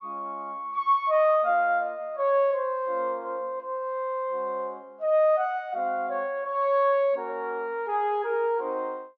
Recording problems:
none

